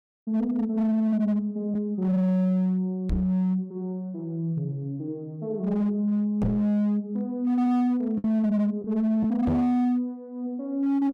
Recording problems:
distortion; hard clipping, signal-to-distortion ratio 11 dB
lost packets; 0.9% of the sound replaced, filled with the last packet
microphone bump; at 3 s, at 6.5 s and at 9.5 s; peak +3 dB vs average level

